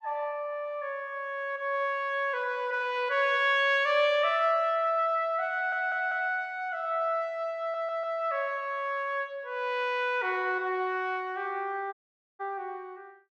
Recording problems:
stutter; at 5.5 s and at 7.5 s
audio cutting out; at 12 s

